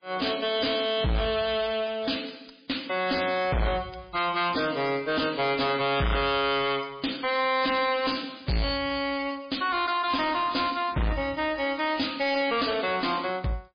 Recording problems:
lossy compression; MP3, log-spectral distance 9 dB, nothing above 5 kHz
distortion; hard clipping, uneven, signal-to-distortion ratio 6 dB

